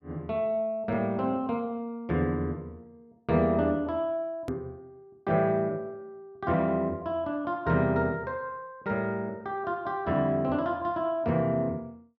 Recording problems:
hard cut with a click; at 4.5 s

